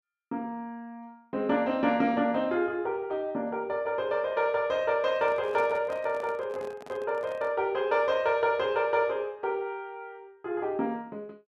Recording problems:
microphone handling noise; from 5 to 7.5 s; peak -10 dB vs average level

